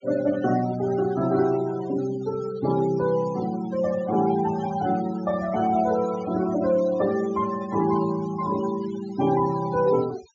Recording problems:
low-pass filter; nothing above 7.2 kHz
denoising artefacts; signal-to-artefact ratio 17 dB

